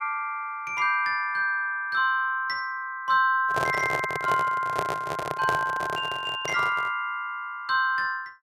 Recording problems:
microphone handling noise; from 3.5 to 7 s; peak 0 dB vs average level

